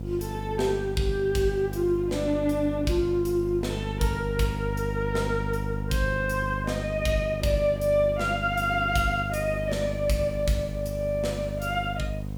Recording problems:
hum; 50 Hz, harmonics up to 750 Hz, SNR 6 dB
background hiss; SNR 29 dB

